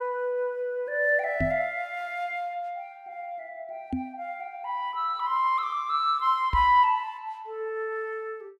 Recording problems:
knock on the microphone; at 1.5 s, at 4 s and at 6.5 s; peak +1 dB vs average level

